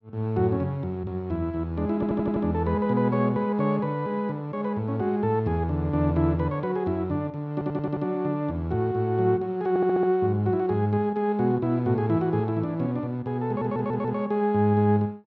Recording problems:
stutter; 4 times, first at 2 s

